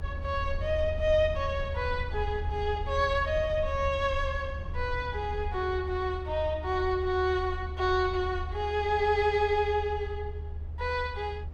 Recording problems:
low-frequency rumble; below 78 Hz, strongest tone 76 Hz, SNR 7 dB

